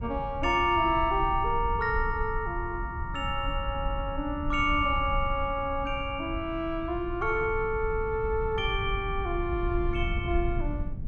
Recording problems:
rumble; below 82 Hz, SNR 7 dB

